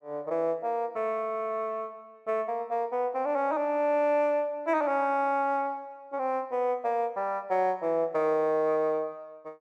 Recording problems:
none

